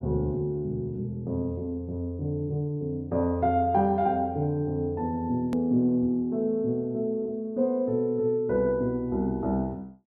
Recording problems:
click at an edit; at 5.5 s

